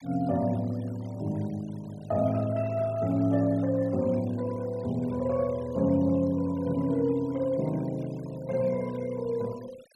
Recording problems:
noise reduction artefacts; signal-to-artefact ratio 23 dB

